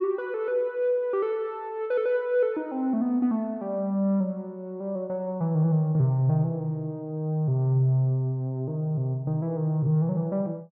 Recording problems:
none

